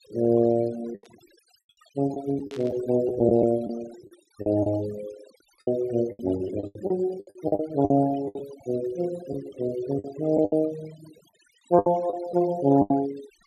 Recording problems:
noise reduction artefacts; signal-to-artefact ratio 19 dB
packet loss; 11% of the sound replaced, filled with the last packet
static burst; at 1 s and at 2.5 s; peak -16 dB vs average level

